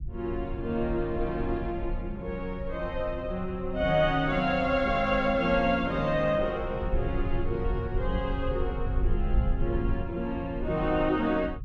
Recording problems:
rumble; below 78 Hz, SNR 7 dB

